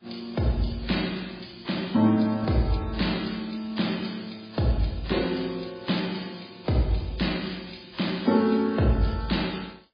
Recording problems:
lossy compression; MP3, then AAC, log-spectral distance 8 dB

